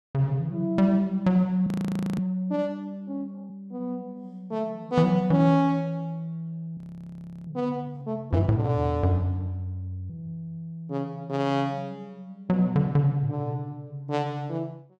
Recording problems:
frozen audio; at 1.5 s for 0.5 s and at 7 s for 0.5 s

